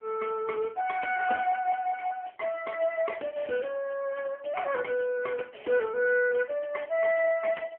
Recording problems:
phone line; 280 Hz to 3 kHz, AMR-NB

